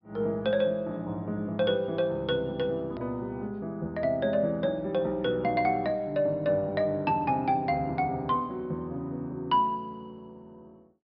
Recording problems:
low-pass filter; nothing above 5.5 kHz
edit click; at 3 s

